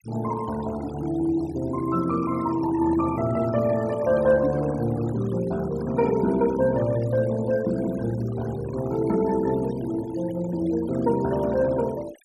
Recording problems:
noise reduction artefacts; signal-to-artefact ratio 18 dB

